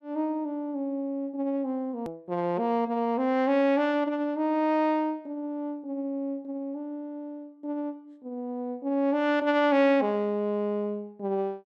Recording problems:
edit click; at 2 s

